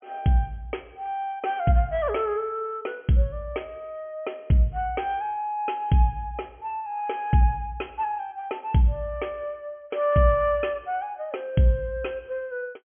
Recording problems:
treble cut off; nothing above 3.3 kHz

